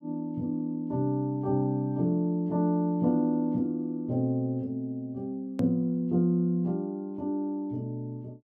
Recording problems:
edit click; at 5.5 s

